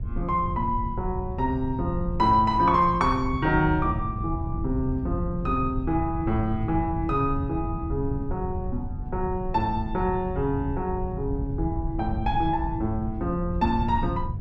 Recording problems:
wind on the microphone; below 110 Hz, SNR 6 dB

